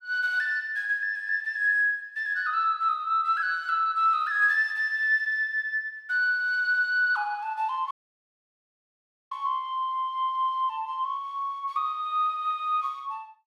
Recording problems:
dropout; at 8 s for 1.5 s

